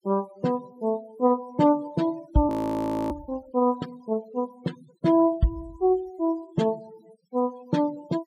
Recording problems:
noise reduction artefacts; signal-to-artefact ratio 22 dB
frozen audio; at 2.5 s for 0.5 s

